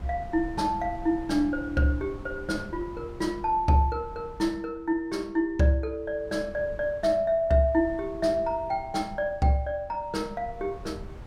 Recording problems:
wind on the microphone; below 160 Hz, SNR 17 dB

